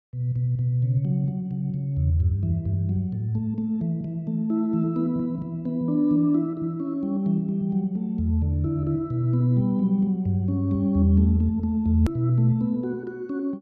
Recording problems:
edit click; at 12 s

